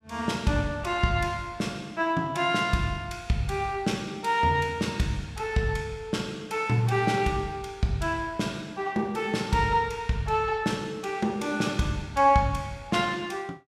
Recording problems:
none

